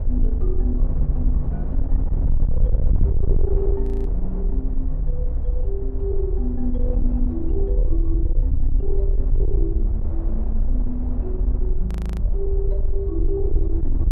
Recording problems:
distorted audio; soft clipping, signal-to-distortion ratio 8 dB
low-frequency rumble; below 56 Hz, SNR -7 dB
wind noise; below 430 Hz, SNR 8 dB
frozen audio; at 4 s and at 12 s

